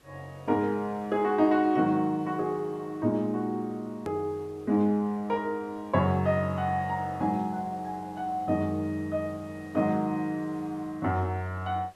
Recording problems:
hiss; slope -4 dB per octave, SNR 28 dB
edit click; at 4 s

